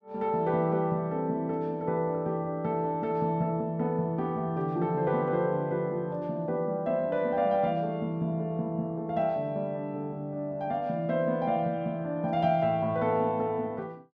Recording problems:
none

